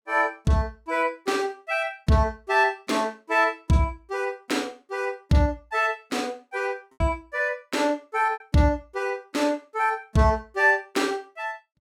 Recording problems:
packet loss; 2% of the sound replaced, filled with repeated pitch periods

